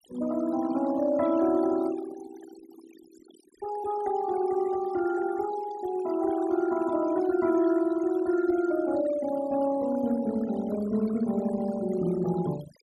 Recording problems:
denoising artefacts; signal-to-artefact ratio 17 dB

